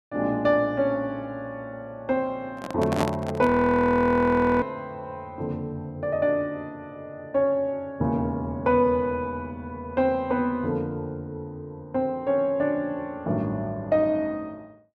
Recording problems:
handling noise; at 2.5 s; peak +2 dB vs average level
frozen audio; at 3.5 s for 1 s

